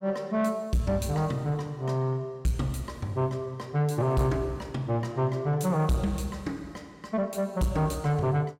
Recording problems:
distortion; soft clipping, signal-to-distortion ratio 11 dB

